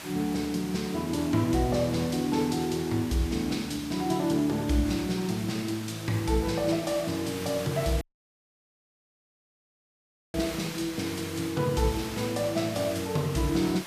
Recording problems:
hiss; slope -1 dB per octave, SNR 12 dB
audio cutting out; at 8 s for 2.5 s

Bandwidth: 14.5 kHz